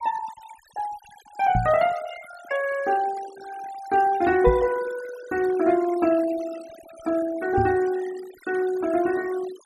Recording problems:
noise reduction artefacts; signal-to-artefact ratio 17 dB
microphone thump; at 1.5 s, at 4.5 s and at 7.5 s; peak +2 dB vs average level

